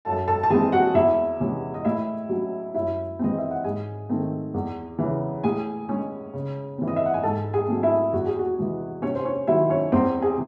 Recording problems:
none

